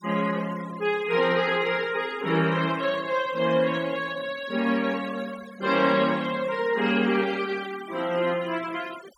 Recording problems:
noise reduction artefacts; signal-to-artefact ratio 19 dB

